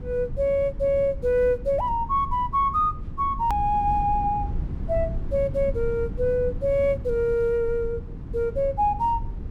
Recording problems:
rumble; below 120 Hz, SNR 10 dB
hard cut with a click; at 3.5 s

